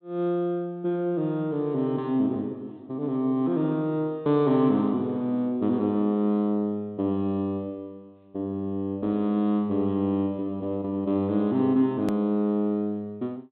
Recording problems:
low-pass filter; nothing above 4 kHz
edit click; at 12 s

